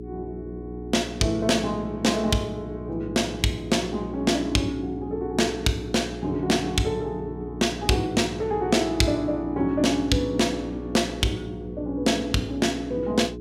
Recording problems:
hum; 60 Hz, harmonics up to 420 Hz, SNR 10 dB

